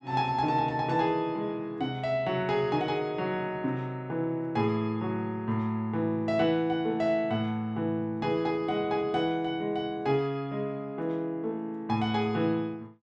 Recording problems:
none

